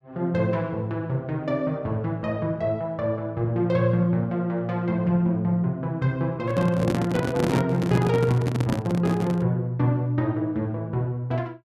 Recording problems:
microphone handling noise; from 6.5 to 9.5 s; peak +4 dB vs average level

